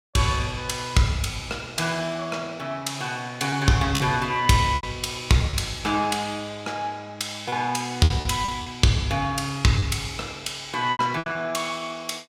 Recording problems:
lost packets; 5% of the sound replaced, filled with repeated pitch periods

